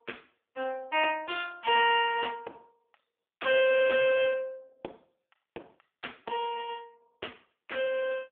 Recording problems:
telephone audio; 370 Hz to 3.5 kHz, AMR-NB

